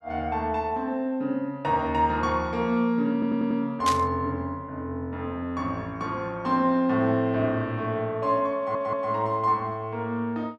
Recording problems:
stutter; at 3 s and at 8.5 s
burst of static; at 4 s; peak +1 dB vs average level

